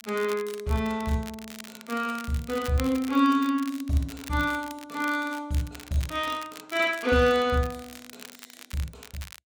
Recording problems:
crackle; vinyl, SNR 17 dB

